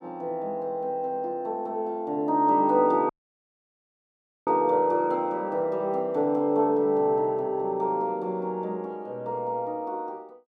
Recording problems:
dropout; at 3 s for 1.5 s

